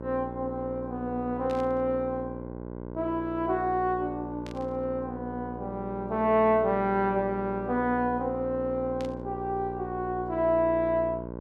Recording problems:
electrical hum; 60 Hz, harmonics up to 1.6 kHz, SNR 10 dB
burst of static; at 1.5 s, at 4.5 s and at 9 s; peak -12 dB vs average level

